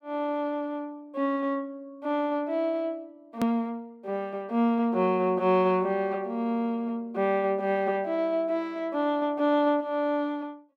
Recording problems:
edit click; at 3.5 s

